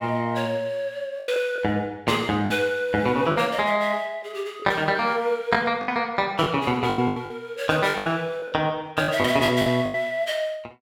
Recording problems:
lost packets; 9% of the sound replaced, filled with the last packet

